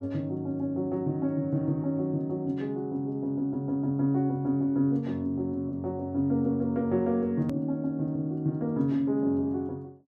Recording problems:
hard cut with a click; at 7.5 s

